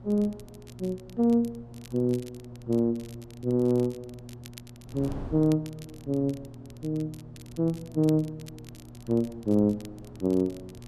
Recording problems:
electrical hum; 60 Hz, harmonics up to 720 Hz, SNR 19 dB
wind on the microphone; below 340 Hz, SNR 22 dB
crackling; vinyl, SNR 25 dB

